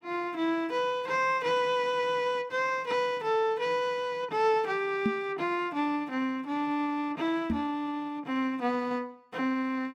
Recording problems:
knock on the microphone; at 5 s and at 7.5 s; peak +4 dB vs average level

